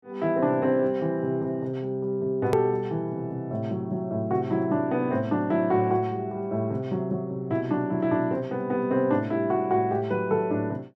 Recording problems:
hard cut with a click; at 2.5 s

